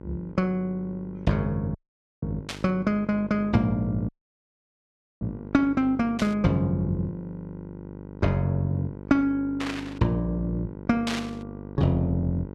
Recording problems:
hum; 50 Hz, harmonics up to 1.5 kHz, SNR 14 dB
audio cutting out; at 2 s and at 4 s for 1 s
static burst; 4 times, first at 2.5 s; peak 0 dB vs average level

